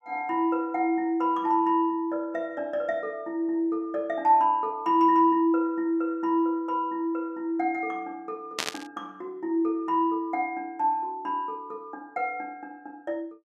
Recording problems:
static burst; at 8.5 s; peak +3 dB vs average level

